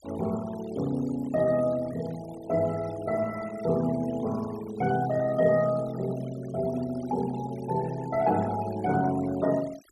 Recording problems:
noise reduction artefacts; signal-to-artefact ratio 17 dB

